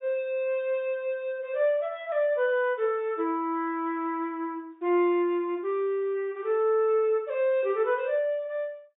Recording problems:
low-pass filter; nothing above 4 kHz

